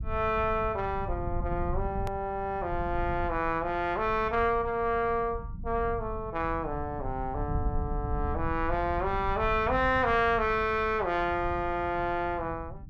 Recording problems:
rumble; below 110 Hz, SNR 9 dB
edit click; at 2 s

